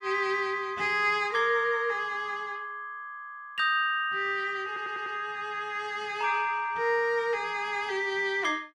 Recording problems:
stutter; at 4.5 s

